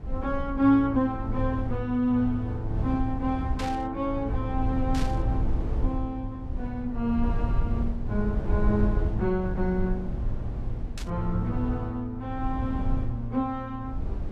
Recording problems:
rumble; below 90 Hz, SNR 4 dB
burst of static; at 3.5 s, at 5 s and at 11 s; peak -4 dB vs average level

